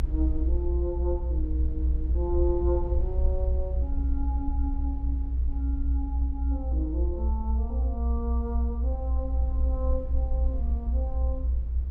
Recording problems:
low-frequency rumble; below 64 Hz, strongest tone 60 Hz, SNR -7 dB

